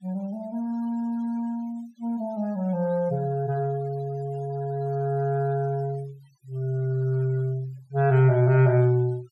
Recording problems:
noise reduction artefacts; signal-to-artefact ratio 25 dB

